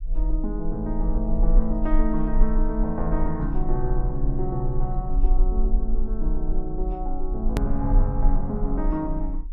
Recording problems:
low-frequency rumble; below 38 Hz, strongest tone 18 Hz, SNR -1 dB
edit click; at 7.5 s

